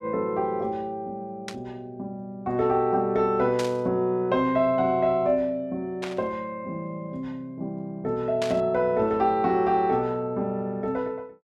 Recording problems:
static burst; 4 times, first at 1.5 s; peak -4 dB vs average level

